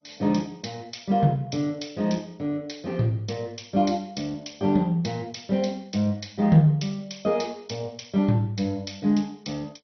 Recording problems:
lossy codec; MP2, log-spectral distance 7 dB, nothing above 6 kHz

